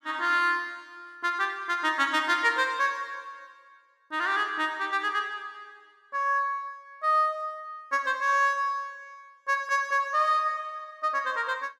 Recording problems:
none

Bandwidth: 14 kHz